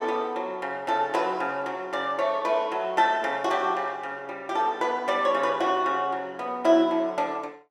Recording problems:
none

